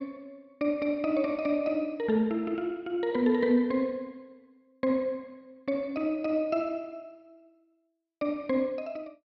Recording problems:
none

